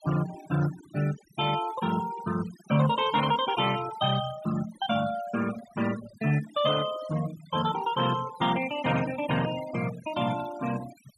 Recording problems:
denoising artefacts; signal-to-artefact ratio 13 dB

